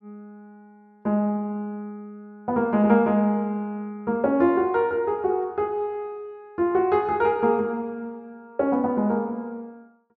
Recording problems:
none

